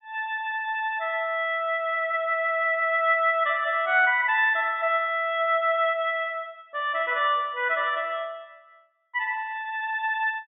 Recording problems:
low-pass filter; nothing above 4 kHz

